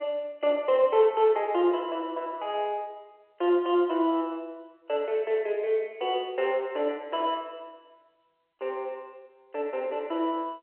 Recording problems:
telephone audio; 300 Hz to 3.1 kHz, G.711

